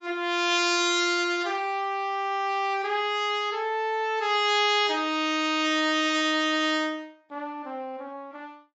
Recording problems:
codec artefacts; AAC, log-spectral distance 2 dB, nothing above 7.3 kHz

